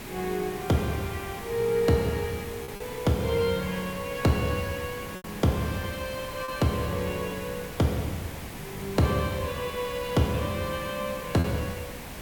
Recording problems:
background hiss; slope -4 dB per octave, SNR 10 dB
lost packets; 2% of the sound replaced, filled with repeated pitch periods

